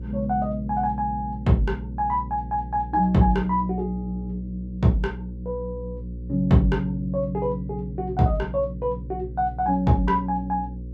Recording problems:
hum; 60 Hz, harmonics up to 540 Hz, SNR 11 dB

